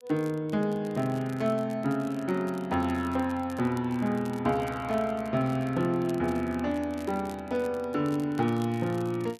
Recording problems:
crackle; vinyl, SNR 24 dB

